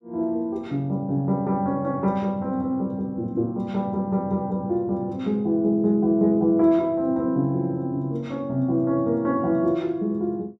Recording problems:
none

